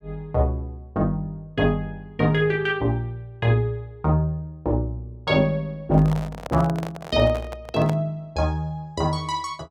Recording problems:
microphone handling noise; from 6 to 8 s; peak -4 dB vs average level

